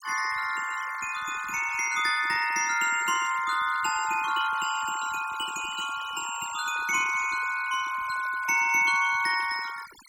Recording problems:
noise reduction artefacts; signal-to-artefact ratio 16 dB

